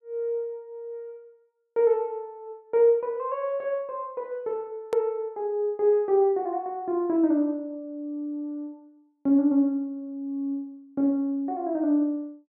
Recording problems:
edit click; at 5 s

